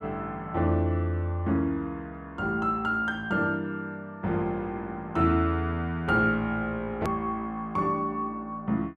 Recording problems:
click at an edit; at 7 s

